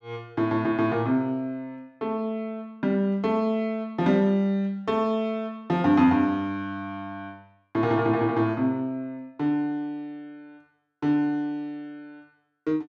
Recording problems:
none

